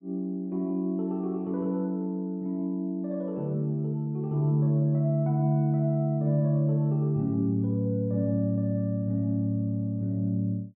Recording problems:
low-pass filter; nothing above 4 kHz

